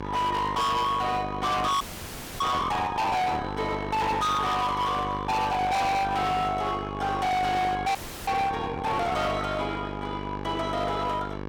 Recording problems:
distorted audio; hard clipping, signal-to-distortion ratio 6 dB
electrical hum; 50 Hz, harmonics up to 2.9 kHz, SNR 8 dB
audio freezing; at 2 s for 0.5 s and at 8 s

